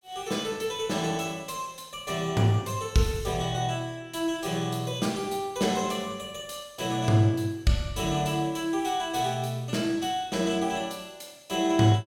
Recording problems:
none

